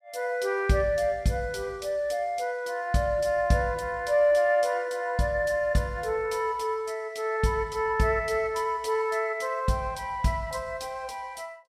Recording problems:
none

